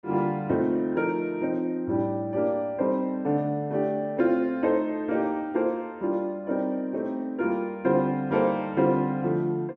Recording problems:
none

